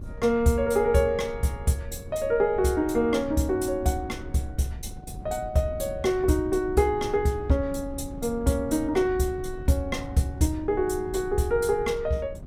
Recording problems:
wind on the microphone; below 140 Hz, SNR 15 dB

